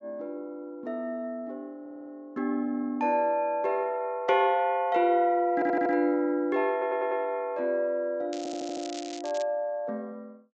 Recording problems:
treble cut off; nothing above 8 kHz
stutter; 4 times, first at 2 s
crackle; from 8.5 to 9.5 s; loose cable, SNR 16 dB

